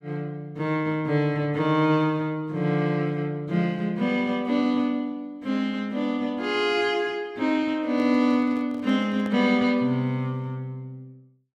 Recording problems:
handling noise; from 8 to 9.5 s; peak -11 dB vs average level

